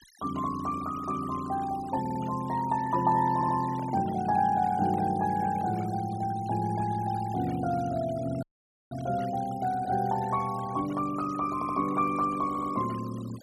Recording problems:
denoising artefacts; signal-to-artefact ratio 19 dB
stutter; 4 times, first at 2 s
handling noise; from 3 to 6 s; peak -12 dB vs average level
audio cutting out; at 8.5 s

